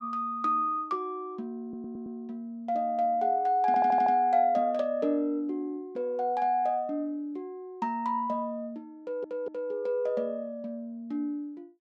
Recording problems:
audio stuttering; at 1.5 s, at 3.5 s and at 9 s

